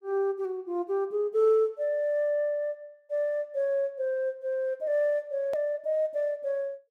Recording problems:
click at an edit; at 5.5 s

